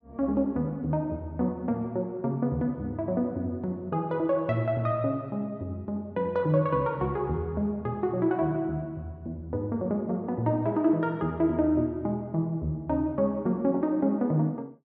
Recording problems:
treble missing; nothing above 8 kHz

